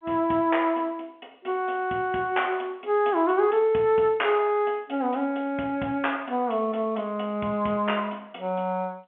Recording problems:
telephone audio; 260 Hz to 3.3 kHz, G.711

